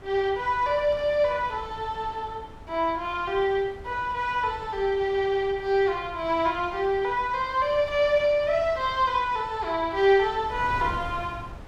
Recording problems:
wind on the microphone; below 480 Hz, SNR 18 dB

